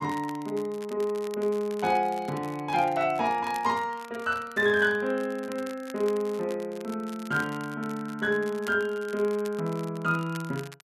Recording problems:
crackle; vinyl, SNR 20 dB

